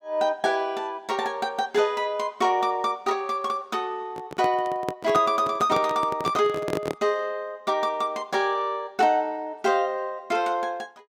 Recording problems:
handling noise; from 4 to 7 s; peak 0 dB vs average level

